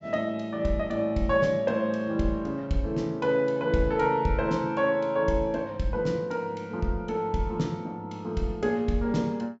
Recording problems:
treble cut off; nothing above 8 kHz

